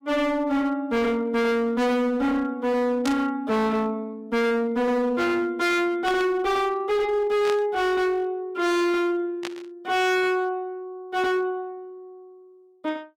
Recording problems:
distortion; hard clipping, signal-to-distortion ratio 7 dB
burst of static; 4 times, first at 3 s; peak -4 dB vs average level

